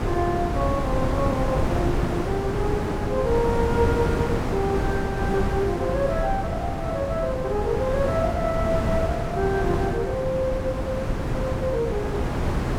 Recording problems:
wind on the microphone; below 480 Hz, SNR 0 dB

